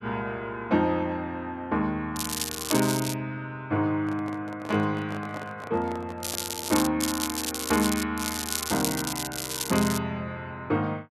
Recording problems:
crackle; 4 times, first at 2 s; loose cable, SNR 2 dB
microphone handling noise; from 4 to 7 s; peak -3 dB vs average level

